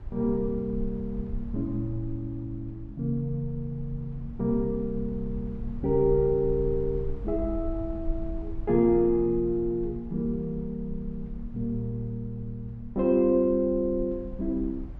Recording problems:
rumble; below 62 Hz, SNR 12 dB

